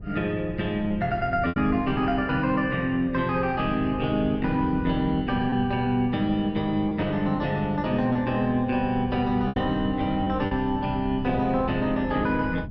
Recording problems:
wind noise; below 150 Hz, SNR 13 dB
lost packets; 3% of the sound replaced, filled with repeated pitch periods

